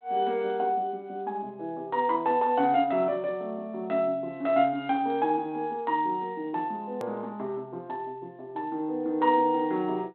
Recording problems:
phone line; 220 Hz to 3.6 kHz, G.726
edit click; at 7 s

